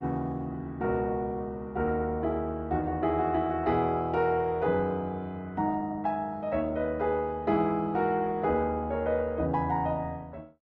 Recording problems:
codec artefacts; Opus, log-spectral distance 2 dB

